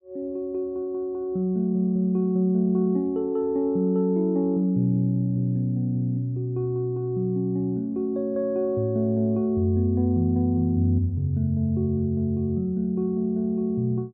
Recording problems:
none

